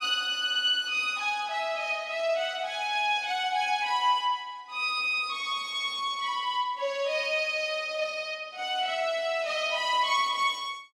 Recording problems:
none

